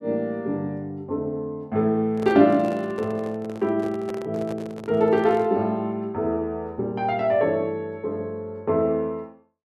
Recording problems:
handling noise; from 2 to 5.5 s; peak -7 dB vs average level

